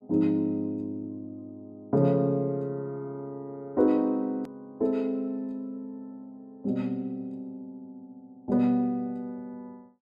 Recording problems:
edit click; at 4.5 s

